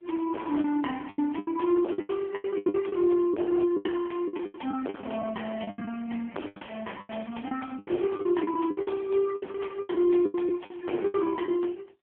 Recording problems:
telephone audio; 240 Hz to 3.4 kHz, AMR-NB
distorted audio; hard clipping, signal-to-distortion ratio 3 dB
lost packets; 17% of the sound replaced, filled with the last packet

